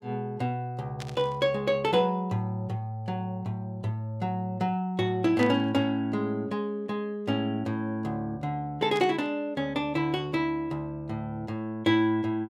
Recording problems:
burst of static; at 1 s, at 5.5 s and at 9 s; peak -7 dB vs average level

